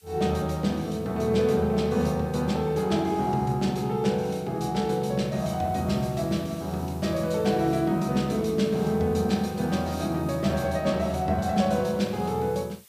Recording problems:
hiss; slope +2 dB per octave, SNR 27 dB

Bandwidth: 15 kHz